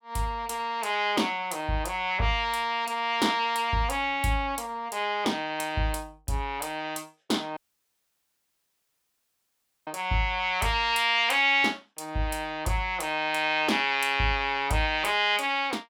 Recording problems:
audio cutting out; at 7.5 s for 2.5 s

